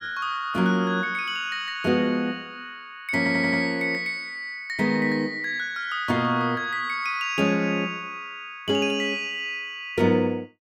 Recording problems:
stutter; at 3 s

